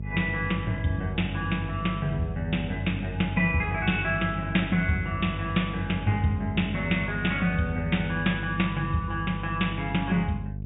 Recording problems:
low-pass filter; nothing above 4 kHz
electrical hum; 50 Hz, harmonics up to 450 Hz, SNR 7 dB

